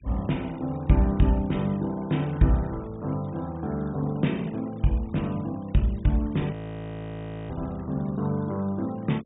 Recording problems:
treble missing; nothing above 4 kHz
denoising artefacts; signal-to-artefact ratio 25 dB
audio freezing; at 6.5 s for 1 s

